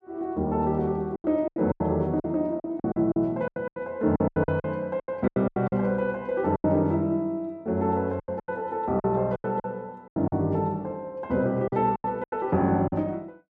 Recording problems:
packet loss; 14% of the sound replaced, filled with silence

